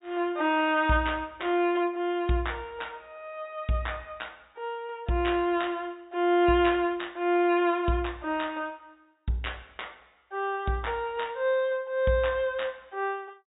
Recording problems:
low-pass filter; nothing above 4 kHz

